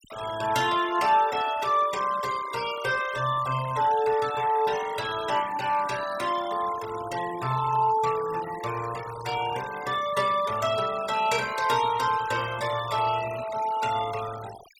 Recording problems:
noise reduction artefacts; signal-to-artefact ratio 14 dB

